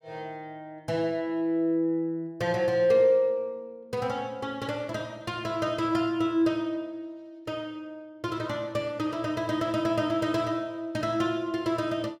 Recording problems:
none

